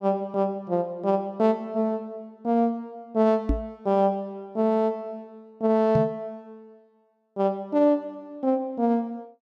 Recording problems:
microphone bump; at 3.5 s and at 6 s; peak +4 dB vs average level

